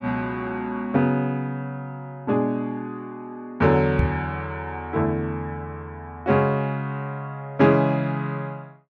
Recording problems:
microphone thump; at 4 s; peak +6 dB vs average level

